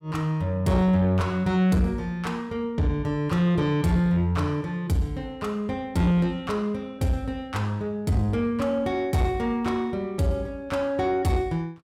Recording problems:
distorted audio; soft clipping, signal-to-distortion ratio 10 dB

